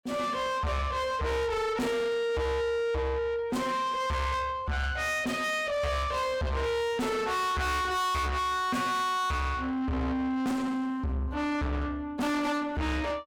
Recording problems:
distorted audio; soft clipping, signal-to-distortion ratio 6 dB

